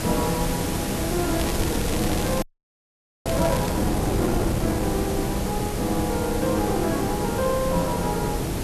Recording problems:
hiss; SNR 6 dB
wind on the microphone; below 440 Hz, SNR 1 dB
crackling; from 1.5 to 3.5 s; loose cable, SNR 10 dB
frozen audio; at 2.5 s for 1 s

